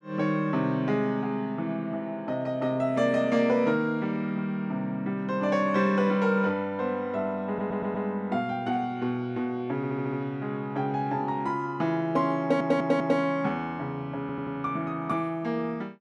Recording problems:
stutter; 4 times, first at 7.5 s

